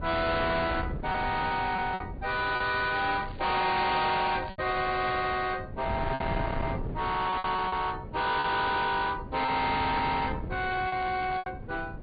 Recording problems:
treble cut off; nothing above 4.6 kHz
lossy compression; AAC, log-spectral distance 3 dB
distortion; soft clipping, signal-to-distortion ratio 7 dB
wind noise; below 620 Hz, SNR 9 dB
packet loss; 5% of the sound replaced, filled with repeated pitch periods
crackle; from 3 to 5 s and at 11 s; loose cable, SNR 21 dB

